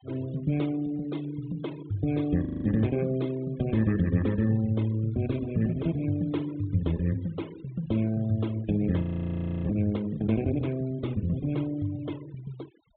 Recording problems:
low-pass filter; nothing above 4 kHz
denoising artefacts; signal-to-artefact ratio 23 dB
frozen audio; at 2.5 s and at 9 s for 0.5 s

